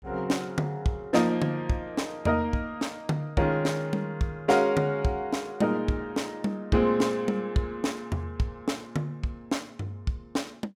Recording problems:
none

